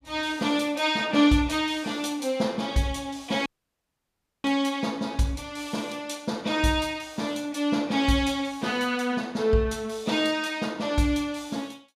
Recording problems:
audio cutting out; at 3.5 s for 1 s

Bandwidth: 15 kHz